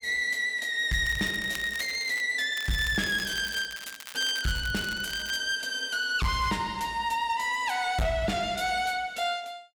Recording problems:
distorted audio; hard clipping, signal-to-distortion ratio 12 dB
crackle; from 1 to 2 s and from 2.5 to 5.5 s; loose cable, SNR 14 dB

